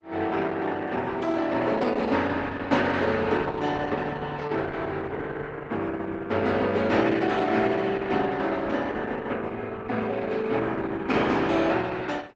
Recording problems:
lossy compression; Opus, log-spectral distance 3 dB, nothing above 7.6 kHz

